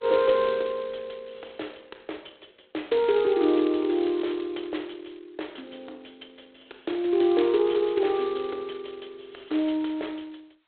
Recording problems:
telephone audio; 280 Hz to 3.7 kHz, G.726

